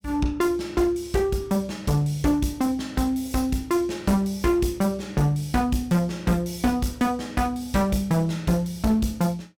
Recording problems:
distortion; hard clipping, uneven, signal-to-distortion ratio 10 dB

